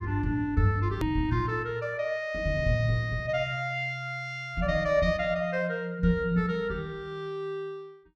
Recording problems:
click at an edit; at 1 s

